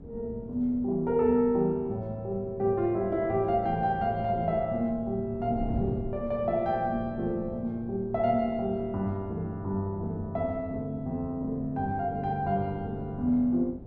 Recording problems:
wind on the microphone; below 260 Hz, SNR 14 dB

